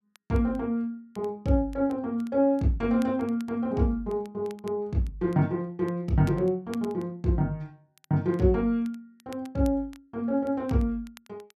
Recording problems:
crackling; vinyl, SNR 28 dB

